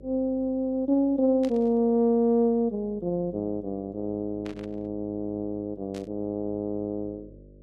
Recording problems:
electrical hum; 50 Hz, harmonics up to 600 Hz, SNR 25 dB
burst of static; at 1.5 s, at 4.5 s and at 6 s; peak -12 dB vs average level

